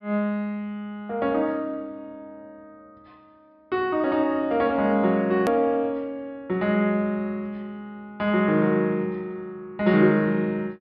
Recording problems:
treble missing; nothing above 5.5 kHz
click at an edit; at 5.5 s

